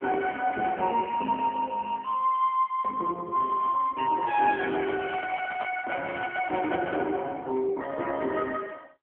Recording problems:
phone line; 220 Hz to 2.2 kHz, AMR-NB
microphone handling noise; from 4.5 to 7 s; peak -7 dB vs average level

